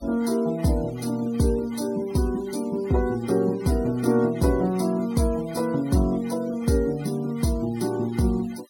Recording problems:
noise reduction artefacts; signal-to-artefact ratio 23 dB

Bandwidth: 17.5 kHz